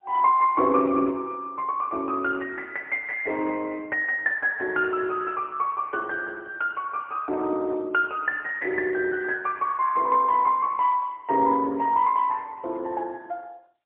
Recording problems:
phone line; 240 Hz to 3.2 kHz, AMR-NB, then MP3

